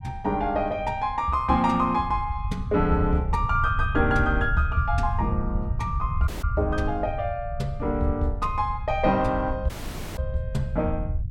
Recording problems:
rumble; below 94 Hz, SNR 5 dB
dropout; at 6.5 s and at 9.5 s

